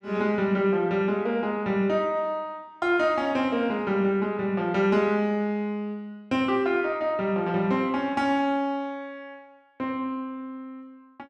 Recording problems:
none

